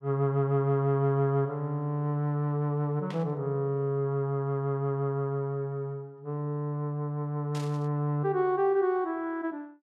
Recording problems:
burst of static; at 3 s and at 7.5 s; peak -10 dB vs average level

